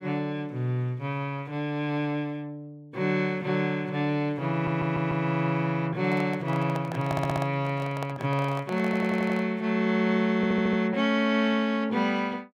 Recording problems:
stutter; 4 times, first at 4.5 s
handling noise; from 6 to 9.5 s; peak -3 dB vs average level

